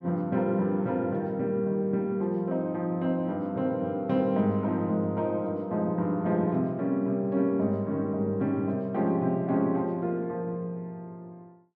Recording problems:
none

